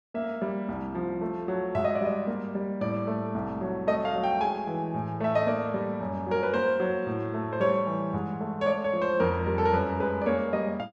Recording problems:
none

